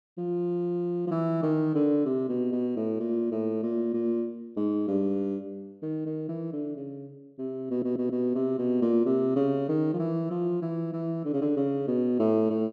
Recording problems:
stutter; at 7.5 s

